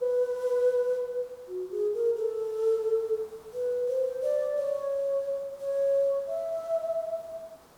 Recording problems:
background hiss; SNR 27 dB

